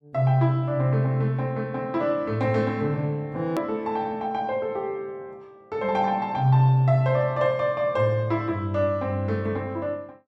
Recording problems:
edit click; at 3.5 s

